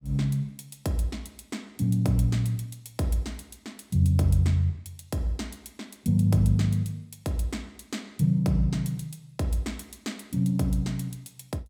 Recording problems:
none

